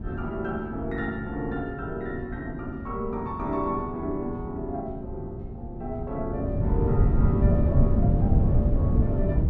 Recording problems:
wind on the microphone; below 150 Hz, SNR -7 dB

